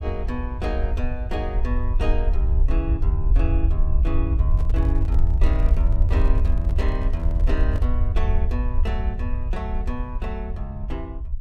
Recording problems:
low-frequency rumble; below 68 Hz, SNR -8 dB
microphone handling noise; from 4.5 to 8 s; peak -5 dB vs average level

